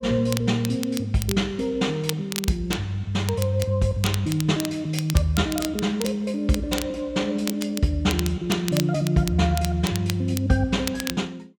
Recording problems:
crackling; vinyl, SNR 10 dB

